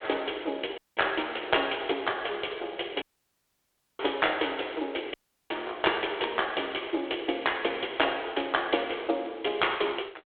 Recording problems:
telephone audio; 300 Hz to 3.5 kHz, G.726
audio cutting out; at 1 s, at 3 s for 1 s and at 5 s

